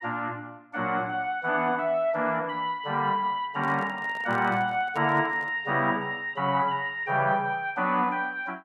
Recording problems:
microphone handling noise; from 3.5 to 5.5 s; peak -9 dB vs average level

